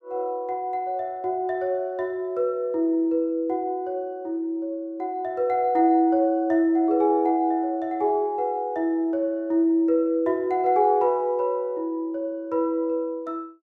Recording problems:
none

